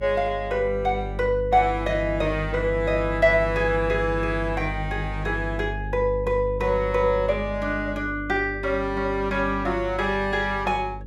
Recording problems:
hum; 50 Hz, harmonics up to 550 Hz, SNR 9 dB

